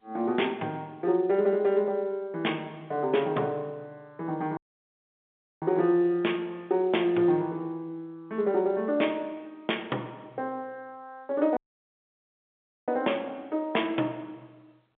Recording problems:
telephone audio; 280 Hz to 3.6 kHz, G.711
audio cutting out; at 4.5 s for 1 s and at 12 s for 1.5 s

